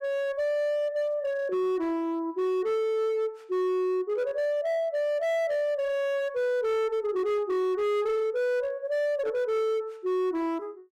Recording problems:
distorted audio; hard clipping, signal-to-distortion ratio 10 dB

